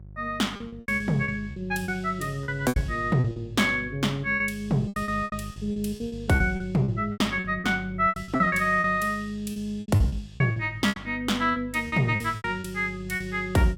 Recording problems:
hum; 50 Hz, harmonics up to 400 Hz, SNR 16 dB
packet loss; 15% of the sound replaced, filled with repeated pitch periods

